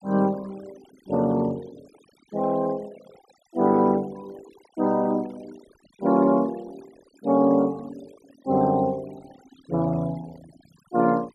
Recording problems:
denoising artefacts; signal-to-artefact ratio 25 dB

